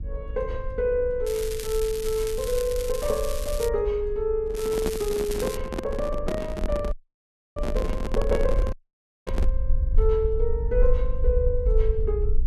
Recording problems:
mains hum; 50 Hz, harmonics up to 650 Hz, SNR 22 dB
rumble; below 52 Hz, SNR 3 dB
crackling; from 1.5 to 3.5 s and from 4.5 to 5.5 s; loose cable, SNR 10 dB
handling noise; from 4.5 to 9.5 s; peak +2 dB vs average level
dropout; at 7 s for 0.5 s and at 8.5 s for 0.5 s

